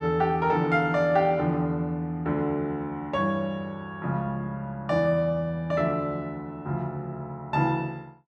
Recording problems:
none

